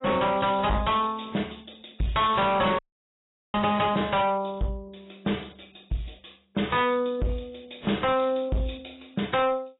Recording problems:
codec artefacts; AAC, log-spectral distance 9 dB, nothing above 3.8 kHz
distorted audio; hard clipping, signal-to-distortion ratio 7 dB
audio cutting out; at 3 s for 1 s

